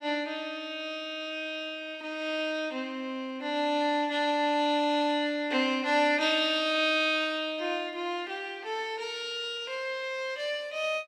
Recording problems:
none

